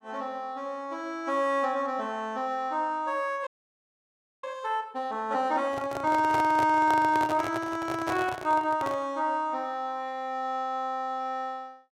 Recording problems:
audio freezing; at 3.5 s for 1 s
microphone handling noise; from 5.5 to 9 s; peak 0 dB vs average level

